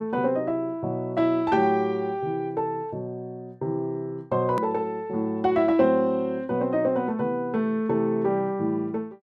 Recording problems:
hard cut with a click; at 4.5 s

